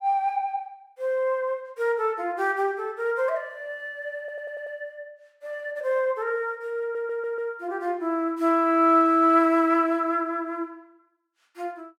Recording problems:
stutter; at 4 s and at 7 s

